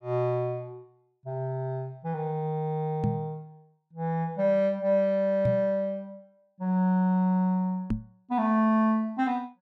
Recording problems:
knock on the microphone; at 3 s, at 5.5 s and at 8 s; peak +3 dB vs average level

